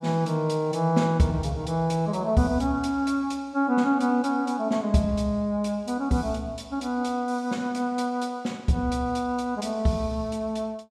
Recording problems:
none

